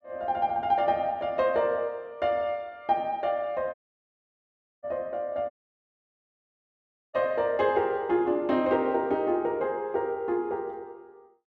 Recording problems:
dropout; at 3.5 s for 1 s and at 5.5 s for 1.5 s

